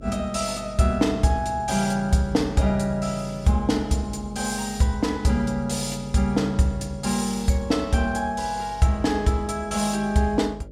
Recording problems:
hum; 50 Hz, harmonics up to 600 Hz, SNR 19 dB

